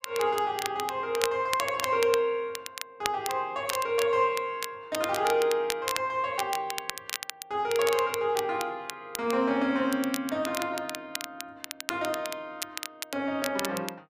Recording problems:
crackling; vinyl, SNR 8 dB

